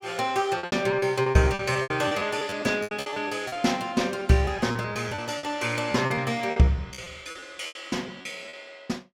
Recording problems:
lost packets; 17% of the sound replaced, filled with repeated pitch periods

